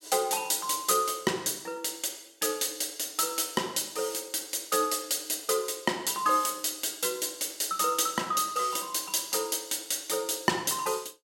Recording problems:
none

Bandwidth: 16.5 kHz